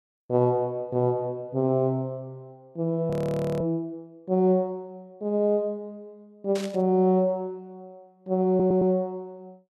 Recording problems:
frozen audio; at 3 s for 0.5 s
static burst; at 6.5 s; peak -9 dB vs average level
audio stuttering; at 8.5 s

